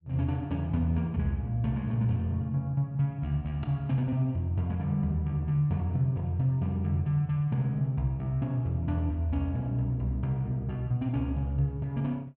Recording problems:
none

